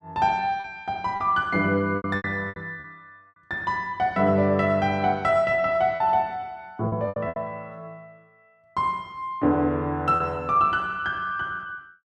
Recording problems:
lost packets; 6% of the sound replaced, filled with repeated pitch periods

